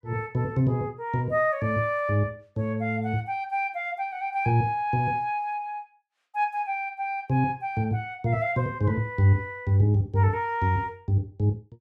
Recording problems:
none

